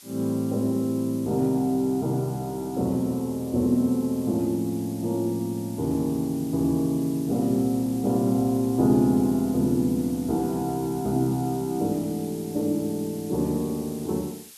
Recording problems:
background hiss; slope +4 dB per octave, SNR 19 dB

